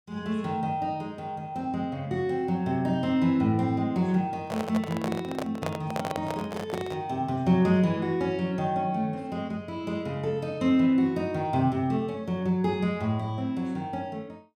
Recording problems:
microphone handling noise; from 4.5 to 7 s; peak 0 dB vs average level

